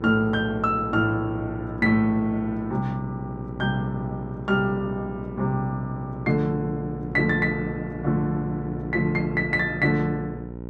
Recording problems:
electrical hum; 60 Hz, harmonics up to 1 kHz, SNR 10 dB

